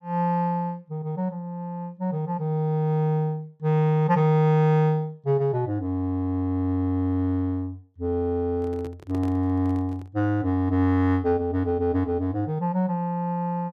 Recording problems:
handling noise; from 8.5 to 10 s; peak -9 dB vs average level

